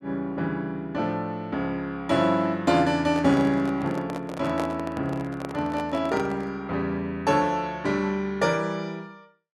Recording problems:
handling noise; from 3 to 6.5 s; peak -2 dB vs average level

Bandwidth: 12.5 kHz